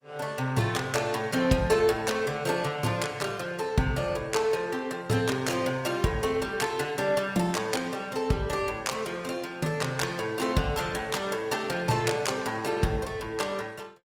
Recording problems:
lossy compression; Opus, log-spectral distance 4 dB, nothing above 19 kHz

